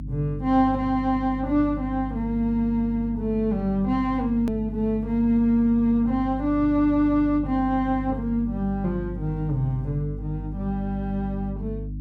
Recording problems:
mains hum; 50 Hz, harmonics up to 300 Hz, SNR 10 dB
click at an edit; at 4.5 s

